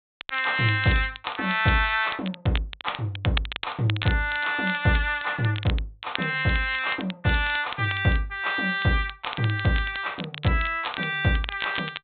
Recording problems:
low-pass filter; nothing above 4 kHz
crackle; vinyl, SNR 12 dB

